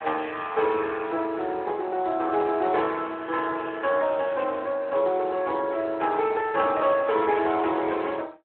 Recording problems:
phone line; 280 Hz to 3.5 kHz, Speex

